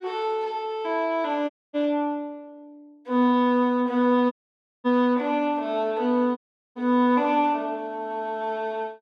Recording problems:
dropout; at 1.5 s, at 4.5 s for 0.5 s and at 6.5 s

